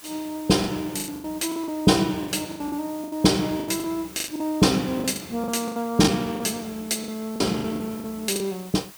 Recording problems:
hiss; slope 0 dB per octave, SNR 19 dB
packet loss; 14% of the sound replaced, filled with the last packet

